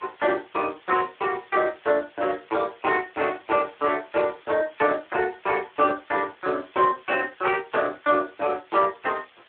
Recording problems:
telephone audio; 280 Hz to 3.7 kHz, Speex
background hiss; SNR 27 dB

